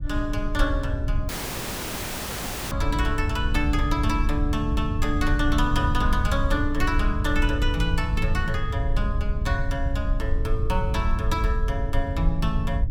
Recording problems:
rumble; below 74 Hz, SNR 0 dB
audio cutting out; at 1.5 s for 1.5 s

